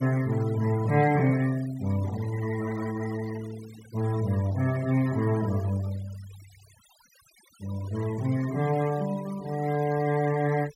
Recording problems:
denoising artefacts; signal-to-artefact ratio 19 dB

